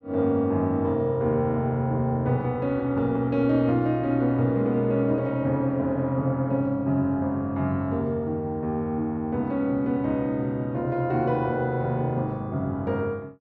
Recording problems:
none

